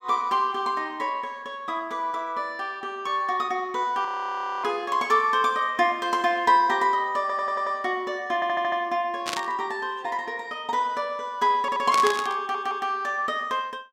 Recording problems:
frozen audio; at 4 s for 0.5 s
audio stuttering; 4 times, first at 7 s
static burst; at 9.5 s and at 12 s; peak +1 dB vs average level

